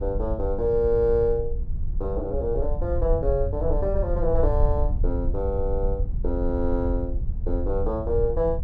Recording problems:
low-frequency rumble; below 68 Hz, SNR 3 dB

